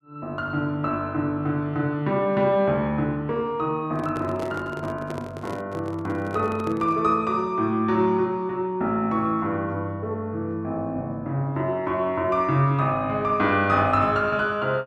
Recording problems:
microphone handling noise; from 4 to 7 s; peak -5 dB vs average level

